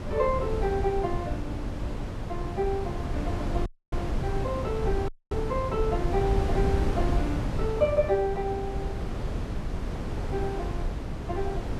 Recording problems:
wind noise; below 240 Hz, SNR 1 dB
audio cutting out; at 3.5 s and at 5 s

